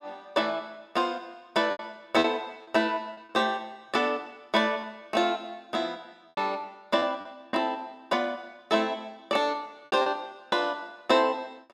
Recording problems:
packet loss; 5% of the sound replaced, filled with repeated pitch periods

